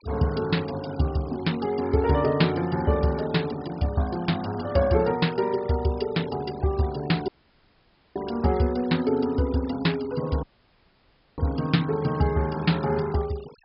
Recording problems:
treble cut off; nothing above 5.3 kHz
noise reduction artefacts; signal-to-artefact ratio 20 dB
dropout; at 7.5 s for 1 s and at 10 s for 1 s

